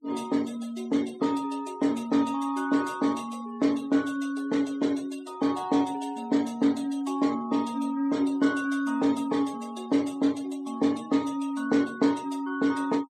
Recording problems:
denoising artefacts; signal-to-artefact ratio 20 dB

